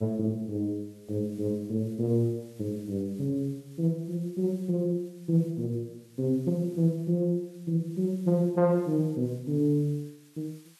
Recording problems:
hiss; slope +2 dB per octave, SNR 29 dB

